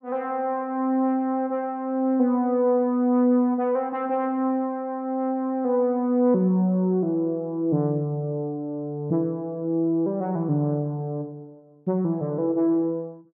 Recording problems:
none

